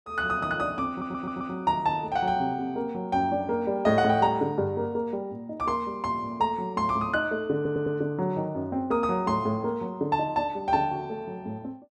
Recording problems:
stutter; at 1 s and at 7.5 s

